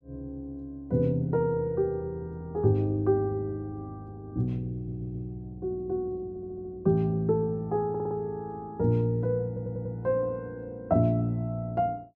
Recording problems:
audio stuttering; 4 times, first at 5 s

